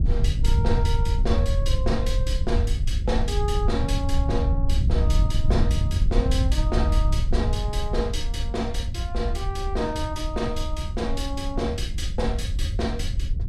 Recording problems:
wind on the microphone; below 80 Hz, SNR -4 dB

